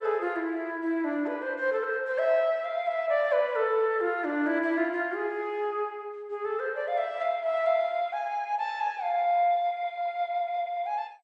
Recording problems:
codec artefacts; MP2, log-spectral distance 2 dB

